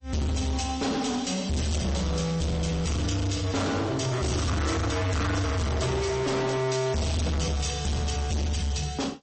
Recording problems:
lossy compression; MP3, log-spectral distance 5 dB, nothing above 8.2 kHz
distortion; hard clipping, uneven, signal-to-distortion ratio 5 dB

